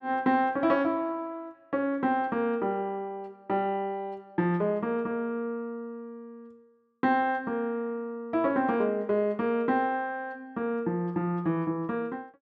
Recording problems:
none

